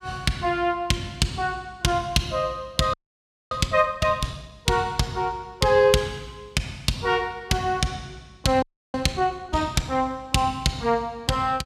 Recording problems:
audio freezing; at 3 s for 0.5 s and at 8.5 s

